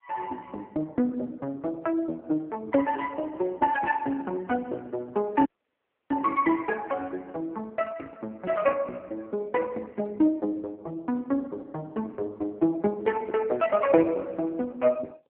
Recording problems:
phone line; 220 Hz to 2.2 kHz, AMR-NB
dropout; at 5.5 s for 0.5 s

